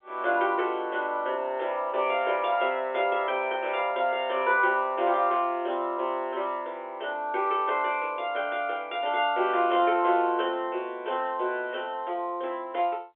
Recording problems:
phone line; 340 Hz to 3.4 kHz, G.711

